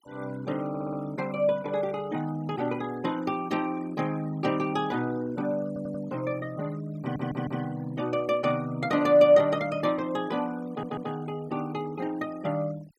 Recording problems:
noise reduction artefacts; signal-to-artefact ratio 21 dB
stutter; 4 times, first at 0.5 s

